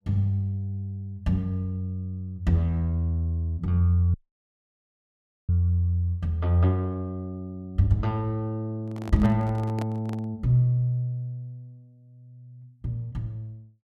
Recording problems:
audio cutting out; at 4 s for 1.5 s
microphone handling noise; from 9 to 10 s; peak -6 dB vs average level

